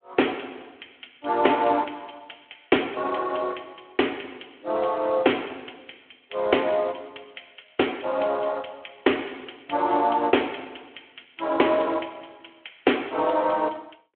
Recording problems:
phone line; 260 Hz to 3.4 kHz, Speex

